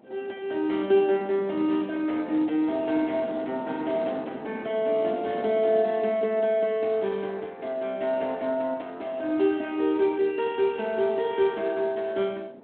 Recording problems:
telephone audio; 220 Hz to 3.7 kHz, Speex
wind noise; below 560 Hz, SNR 17 dB

